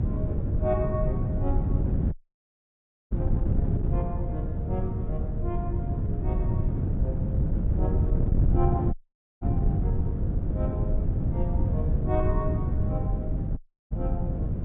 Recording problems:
treble cut off; nothing above 4 kHz
electrical hum; 60 Hz, harmonics up to 660 Hz, SNR 11 dB
wind noise; below 140 Hz, SNR -8 dB
dropout; at 2 s for 1 s, at 9 s and at 14 s

